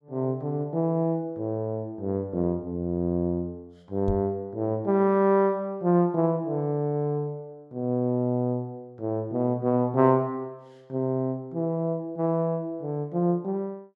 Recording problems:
knock on the microphone; at 4 s; peak -1 dB vs average level

